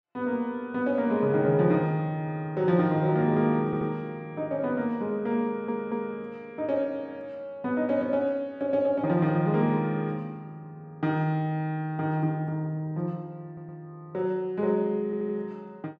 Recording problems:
audio stuttering; 4 times, first at 3.5 s

